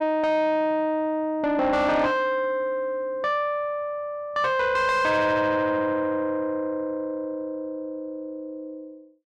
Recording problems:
distorted audio; soft clipping, signal-to-distortion ratio 10 dB

